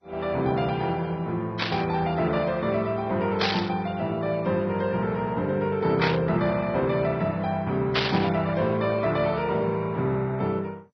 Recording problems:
lossy compression; Vorbis, then MP2, log-spectral distance 3 dB, nothing above 4.9 kHz
static burst; 4 times, first at 1.5 s; peak +5 dB vs average level

